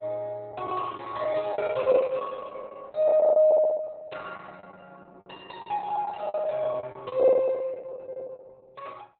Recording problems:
lossy codec; Opus, log-spectral distance 3 dB, nothing above 4 kHz
packet loss; 17% of the sound replaced, filled with the last packet

